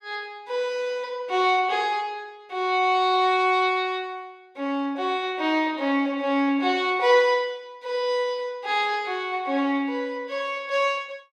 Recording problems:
none

